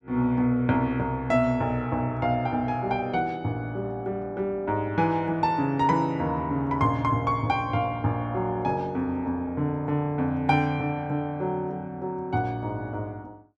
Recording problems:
none

